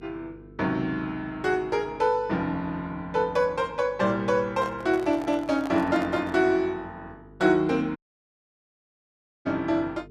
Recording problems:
electrical hum; 50 Hz, harmonics up to 450 Hz, SNR 23 dB
microphone handling noise; from 4.5 to 6.5 s; peak -7 dB vs average level
audio cutting out; at 8 s for 1.5 s

